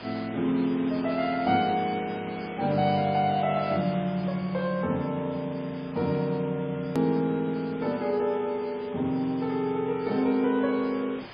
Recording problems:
lossy codec; MP3, log-spectral distance 13 dB, nothing above 13.1 kHz
background hiss; SNR 17 dB
click at an edit; at 7 s

